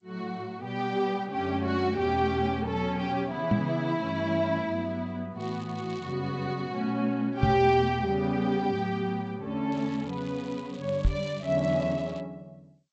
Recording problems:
codec artefacts; G.722, log-spectral distance 3 dB
knock on the microphone; at 3.5 s, at 7.5 s and at 11 s; peak +7 dB vs average level
crackling; at 5.5 s and from 9.5 to 12 s; loose cable, SNR 23 dB

